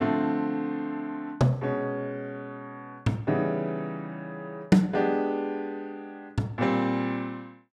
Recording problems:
none

